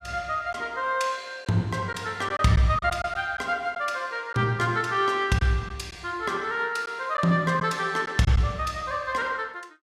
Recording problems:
lost packets; 3% of the sound replaced, filled with silence

